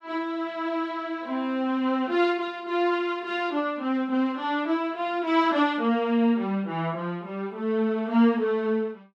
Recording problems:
none

